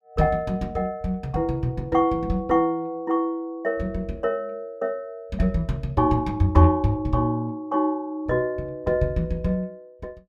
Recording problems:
none

